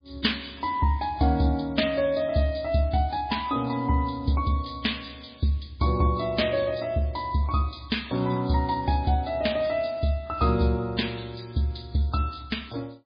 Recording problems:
lossy compression; MP3, log-spectral distance 5 dB, nothing above 4.5 kHz

